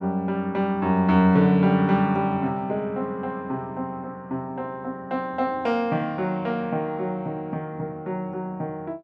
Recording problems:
none

